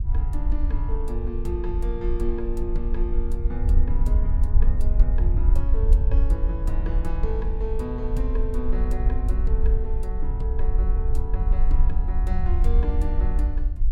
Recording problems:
rumble; below 52 Hz, SNR -9 dB

